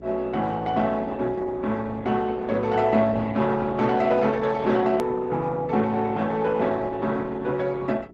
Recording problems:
codec artefacts; Opus, log-spectral distance 3 dB, nothing above 13.1 kHz
hum; 60 Hz, harmonics up to 420 Hz, SNR 22 dB
hard cut with a click; at 5 s

